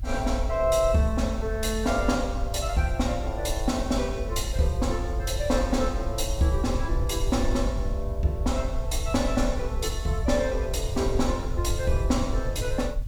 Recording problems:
hiss; slope -3 dB per octave, SNR 28 dB
rumble; below 72 Hz, SNR 4 dB

